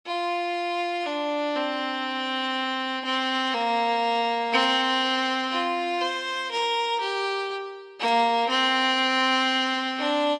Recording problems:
lossy codec; AAC, log-spectral distance 2 dB
static burst; at 4.5 s, at 6.5 s and at 8 s; peak -12 dB vs average level

